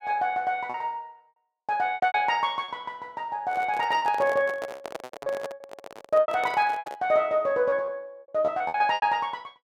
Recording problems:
packet loss; 12% of the sound replaced, filled with repeated pitch periods
microphone handling noise; from 3.5 to 7 s; peak -5 dB vs average level

